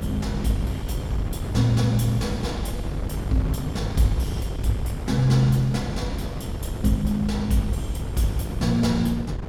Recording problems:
electrical hum; 50 Hz, harmonics up to 500 Hz, SNR 11 dB
wind on the microphone; below 260 Hz, SNR 7 dB

